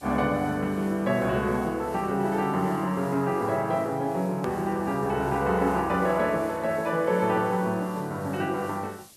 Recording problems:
background hiss; SNR 24 dB
click at an edit; at 4.5 s

